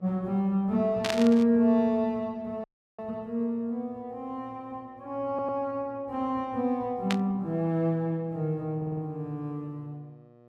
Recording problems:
electrical hum; 60 Hz, harmonics up to 1.4 kHz, SNR 28 dB
static burst; at 1 s and at 7 s; peak +2 dB vs average level
audio cutting out; at 2.5 s
audio stuttering; at 5.5 s and at 9 s

